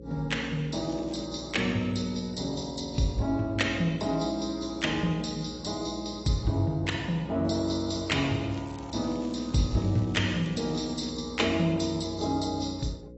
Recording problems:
lossy compression; AAC, log-spectral distance 5 dB, nothing above 7.8 kHz
electrical hum; 60 Hz, harmonics up to 540 Hz, SNR 16 dB
crackling; at 1 s and from 8.5 to 11 s; loose cable, SNR 23 dB

